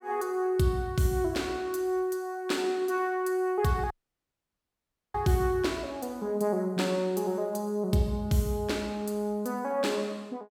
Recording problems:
dropout; at 4 s for 1 s

